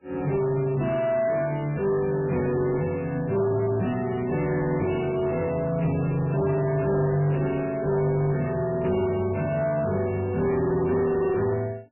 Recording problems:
lossy compression; MP3, log-spectral distance 3 dB, nothing above 2.4 kHz
distorted audio; soft clipping, signal-to-distortion ratio 10 dB

